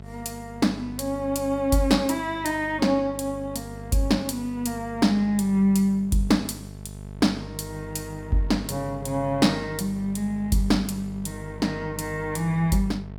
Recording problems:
hum; 50 Hz, harmonics up to 1.1 kHz, SNR 14 dB

